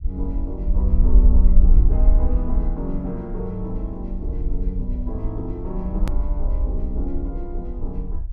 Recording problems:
low-frequency rumble; below 52 Hz, SNR -7 dB
edit click; at 6 s

